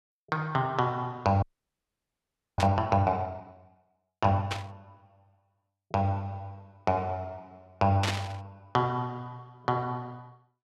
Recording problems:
frozen audio; at 1.5 s for 1 s
burst of static; at 2.5 s, at 4.5 s and at 8 s; peak +3 dB vs average level

